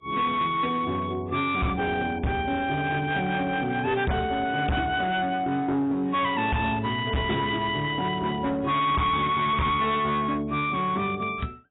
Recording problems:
codec artefacts; AAC, log-spectral distance 3 dB, nothing above 3.4 kHz
distorted audio; hard clipping, uneven, signal-to-distortion ratio 7 dB

